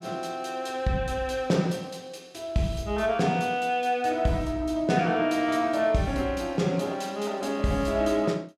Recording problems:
none

